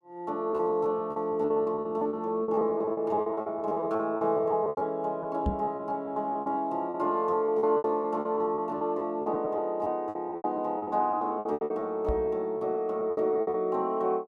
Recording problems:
packet loss; 18% of the sound replaced, filled with repeated pitch periods
microphone thump; at 5.5 s and at 12 s; peak +3 dB vs average level

